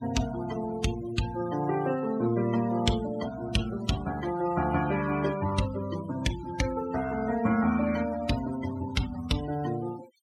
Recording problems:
noise reduction artefacts; signal-to-artefact ratio 13 dB

